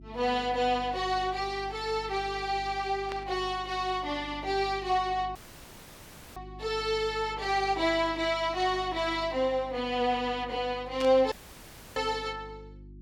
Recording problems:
electrical hum; 50 Hz, harmonics up to 350 Hz, SNR 18 dB
static burst; at 3 s and at 11 s; peak -7 dB vs average level
dropout; at 5.5 s for 1 s and at 11 s for 0.5 s

